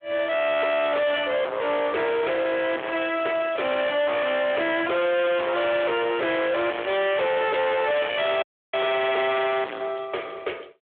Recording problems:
phone line; 300 Hz to 3.5 kHz, Speex
distortion; soft clipping, signal-to-distortion ratio 5 dB
crackling; from 1.5 to 6 s; loose cable, SNR 22 dB
audio cutting out; at 8.5 s

